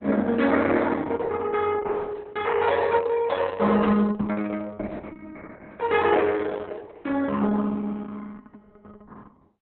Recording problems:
lossy compression; Opus, log-spectral distance 4 dB, nothing above 3.6 kHz

